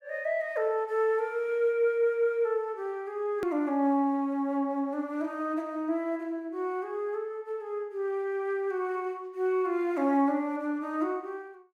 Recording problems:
click at an edit; at 3.5 s

